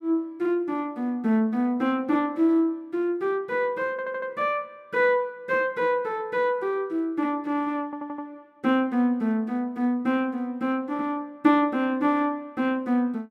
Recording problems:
stutter; at 4 s and at 8 s

